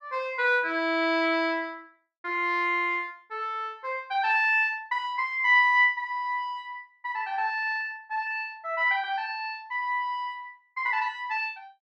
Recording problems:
none

